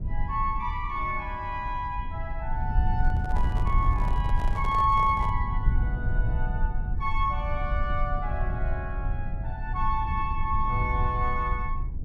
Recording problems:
rumble; below 78 Hz, SNR 0 dB
handling noise; from 3 to 5.5 s; peak -7 dB vs average level

